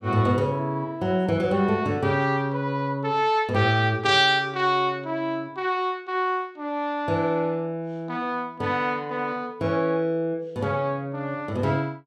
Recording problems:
none

